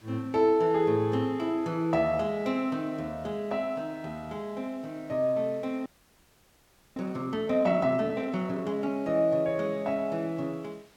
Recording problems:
background hiss; slope -2 dB per octave, SNR 29 dB
frozen audio; at 6 s for 1 s

